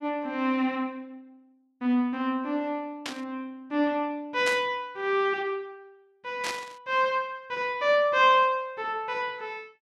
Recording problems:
static burst; at 3 s, at 4.5 s and at 6.5 s; peak -1 dB vs average level

